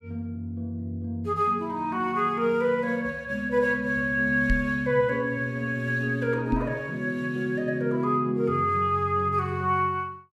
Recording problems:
microphone bump; at 4.5 s and at 6.5 s; peak +2 dB vs average level

